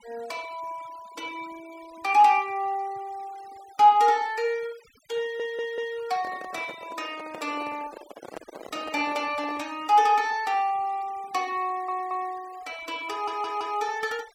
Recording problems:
denoising artefacts; signal-to-artefact ratio 23 dB
stutter; at 5 s, at 12 s and at 13 s
handling noise; from 6 to 9.5 s; peak -8 dB vs average level

